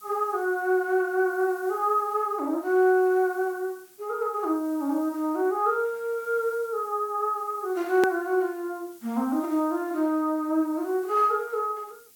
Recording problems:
background hiss; SNR 25 dB
click at an edit; at 8 s

